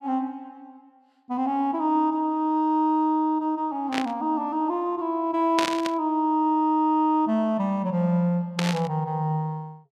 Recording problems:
burst of static; at 4 s, at 5.5 s and at 8.5 s; peak +2 dB vs average level

